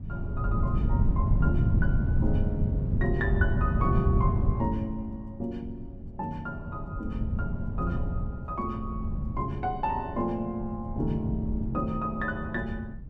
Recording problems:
wind noise; below 140 Hz, SNR -3 dB

